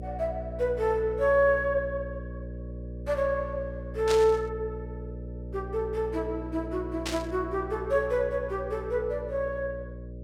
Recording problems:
mains hum; 60 Hz, harmonics up to 600 Hz, SNR 11 dB
burst of static; at 4 s and at 7 s; peak 0 dB vs average level

